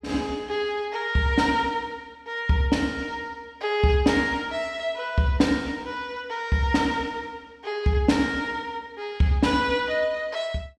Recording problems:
none

